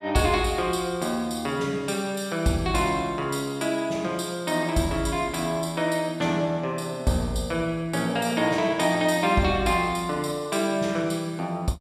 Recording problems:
none

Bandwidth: 14.5 kHz